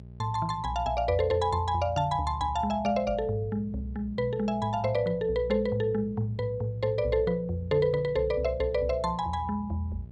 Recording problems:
hum; 60 Hz, harmonics up to 660 Hz, SNR 17 dB

